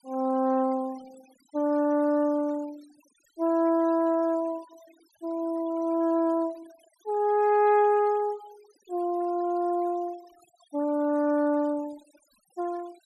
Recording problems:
noise reduction artefacts; signal-to-artefact ratio 26 dB

